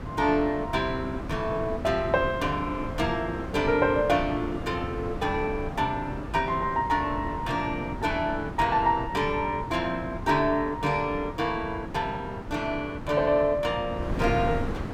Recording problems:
wind on the microphone; below 370 Hz, SNR 9 dB

